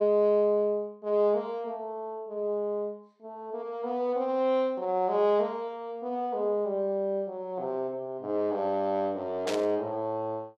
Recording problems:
burst of static; at 9.5 s; peak -2 dB vs average level

